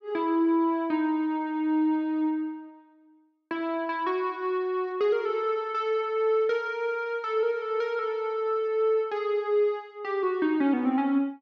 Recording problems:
none

